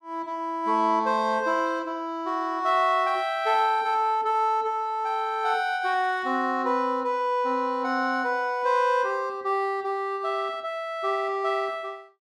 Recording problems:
none

